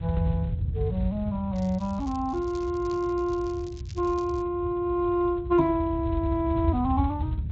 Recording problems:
codec artefacts; Speex, log-spectral distance 2 dB
rumble; below 100 Hz, SNR 5 dB
crackling; from 1.5 to 4.5 s; loose cable, SNR 24 dB
knock on the microphone; at 5.5 s; peak +2 dB vs average level

